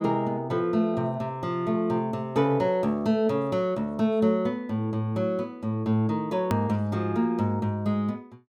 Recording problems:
hard cut with a click; at 6.5 s

